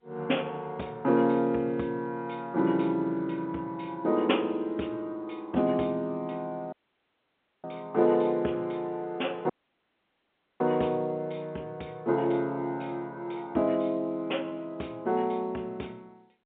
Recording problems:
phone line; 170 Hz to 3.5 kHz, G.711
audio cutting out; at 6.5 s for 1 s and at 9.5 s for 1 s

